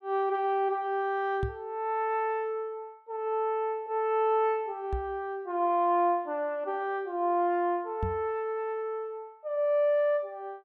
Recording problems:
microphone bump; at 1.5 s, at 5 s and at 8 s; peak 0 dB vs average level

